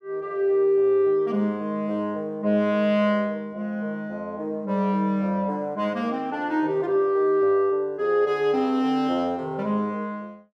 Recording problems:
none

